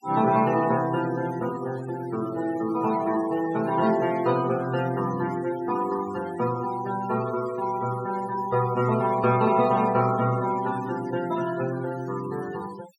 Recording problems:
denoising artefacts; signal-to-artefact ratio 17 dB

